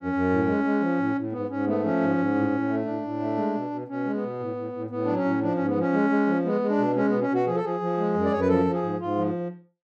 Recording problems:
none

